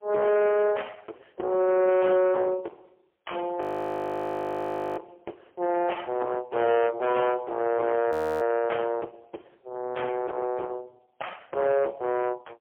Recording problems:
telephone audio; 320 Hz to 3.2 kHz, AMR-NB, then MP3
distorted audio; soft clipping, signal-to-distortion ratio 8 dB
frozen audio; at 3.5 s for 1.5 s and at 8 s

